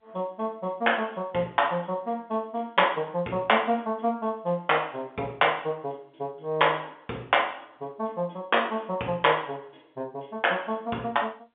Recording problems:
telephone audio; 240 Hz to 3.5 kHz, G.711

